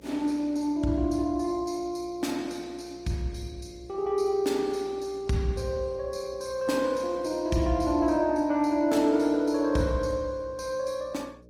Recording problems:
codec artefacts; Opus, log-spectral distance 2 dB, nothing above 20.1 kHz
hum; 60 Hz, harmonics up to 600 Hz, SNR 25 dB

